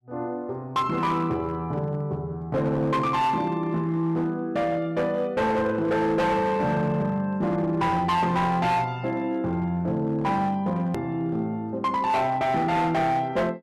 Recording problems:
distortion; hard clipping, signal-to-distortion ratio 11 dB
hard cut with a click; at 11 s

